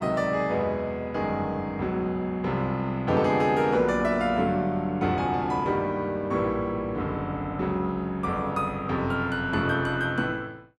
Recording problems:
none

